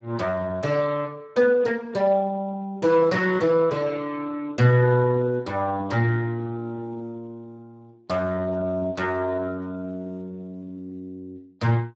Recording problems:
lossy compression; Speex, log-spectral distance 2 dB

